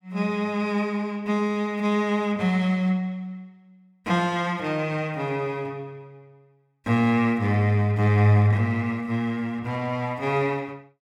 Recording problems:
none

